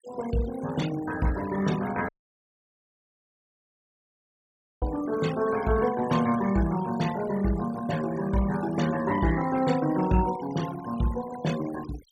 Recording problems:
noise reduction artefacts; signal-to-artefact ratio 14 dB
dropout; at 2 s for 2.5 s

